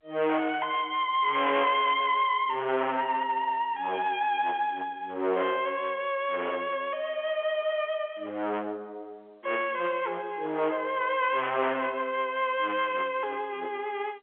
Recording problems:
telephone audio; 320 Hz to 3.5 kHz, G.711
distorted audio; hard clipping, uneven, signal-to-distortion ratio 6 dB

